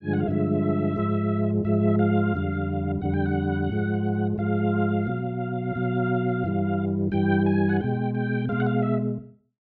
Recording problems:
none

